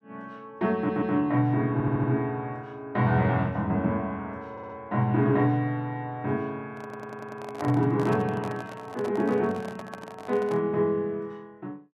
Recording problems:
stutter; 4 times, first at 1 s
microphone handling noise; from 6.5 to 11 s; peak -5 dB vs average level

